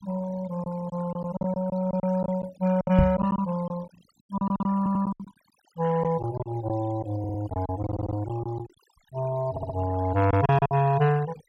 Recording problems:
denoising artefacts; signal-to-artefact ratio 19 dB
lost packets; 11% of the sound replaced, filled with silence
microphone thump; at 3 s; peak +9 dB vs average level
stutter; 4 times, first at 5 s

